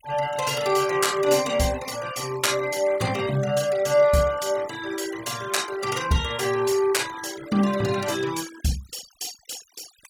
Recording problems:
noise reduction artefacts; signal-to-artefact ratio 15 dB

